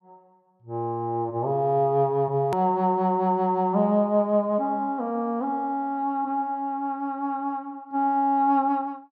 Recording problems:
hard cut with a click; at 2.5 s

